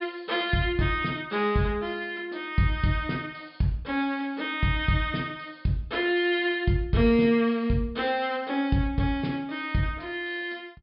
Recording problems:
treble cut off; nothing above 5.2 kHz

